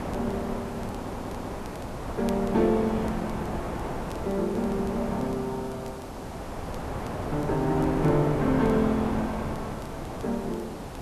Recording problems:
hiss; SNR 17 dB
wind noise; below 850 Hz, SNR 6 dB
crackle; vinyl, SNR 28 dB
audio stuttering; at 1 s

